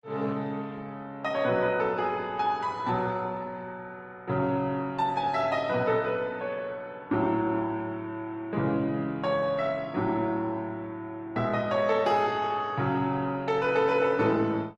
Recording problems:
lossy compression; Opus, log-spectral distance 2 dB, nothing above 13.1 kHz

